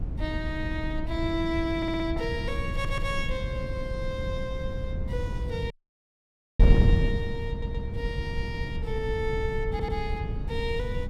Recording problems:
wind on the microphone; below 120 Hz, SNR -2 dB
audio stuttering; 4 times, first at 2 s
dropout; at 5.5 s for 1 s

